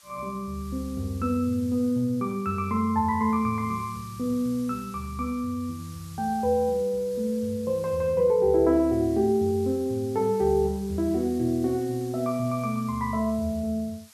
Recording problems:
hiss; SNR 23 dB

